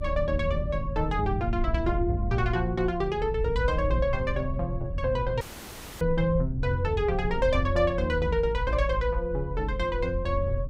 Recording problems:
rumble; below 78 Hz, SNR 6 dB
dropout; at 5.5 s for 0.5 s

